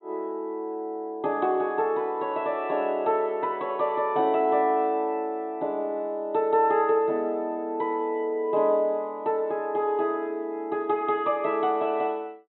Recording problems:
treble missing; nothing above 4 kHz

